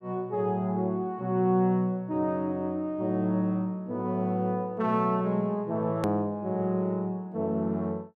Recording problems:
hard cut with a click; at 6 s

